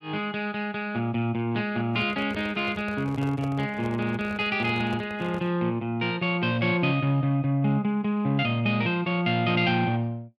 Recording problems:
handling noise; from 2 to 5.5 s; peak -8 dB vs average level

